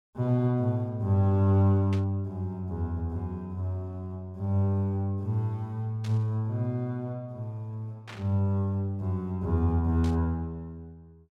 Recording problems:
burst of static; 4 times, first at 2 s; peak -10 dB vs average level

